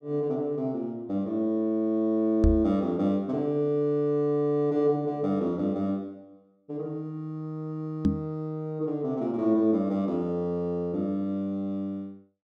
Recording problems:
microphone bump; at 2.5 s and at 8 s; peak +7 dB vs average level

